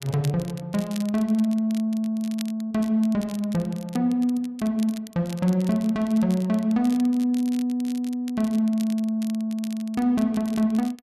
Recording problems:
crackling; vinyl, SNR 21 dB

